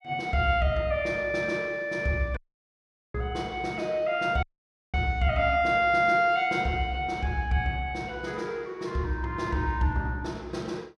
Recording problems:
dropout; at 2.5 s for 1 s and at 4.5 s for 0.5 s

